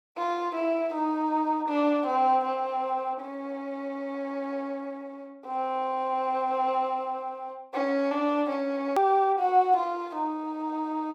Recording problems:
hard cut with a click; at 9 s

